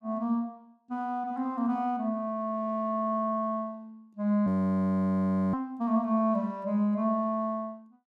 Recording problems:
audio freezing; at 4.5 s for 1 s

